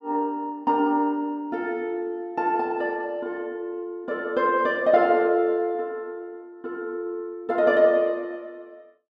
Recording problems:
none

